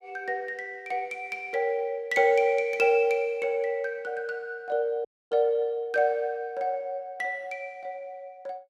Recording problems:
dropout; at 5 s

